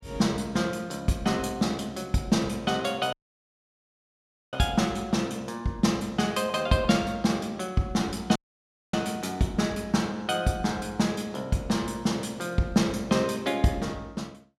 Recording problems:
audio cutting out; at 3 s for 1.5 s and at 8.5 s for 0.5 s

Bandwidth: 16 kHz